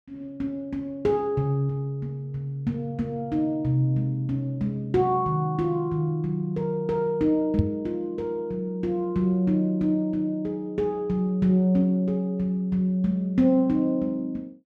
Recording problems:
microphone bump; at 7.5 s; peak +6 dB vs average level

